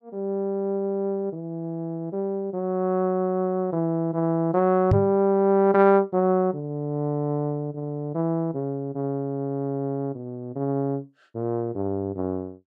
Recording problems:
microphone thump; at 5 s; peak +8 dB vs average level

